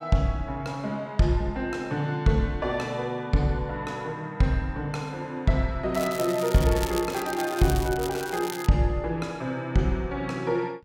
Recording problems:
crackling; from 6 to 8.5 s; loose cable, SNR 11 dB

